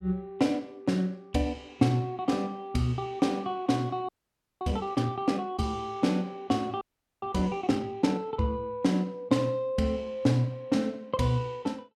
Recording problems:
frozen audio; at 4 s for 0.5 s and at 7 s

